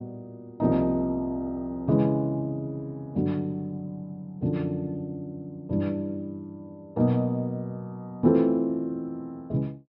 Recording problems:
treble missing; nothing above 5.5 kHz

